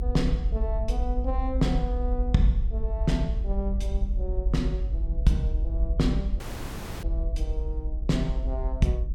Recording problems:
rumble; below 58 Hz, strongest tone 46 Hz, SNR -1 dB
audio cutting out; at 6.5 s for 0.5 s

